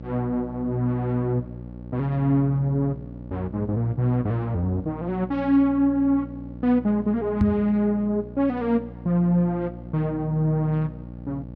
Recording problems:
electrical hum; 60 Hz, harmonics up to 900 Hz, SNR 14 dB
knock on the microphone; at 7.5 s; peak +5 dB vs average level

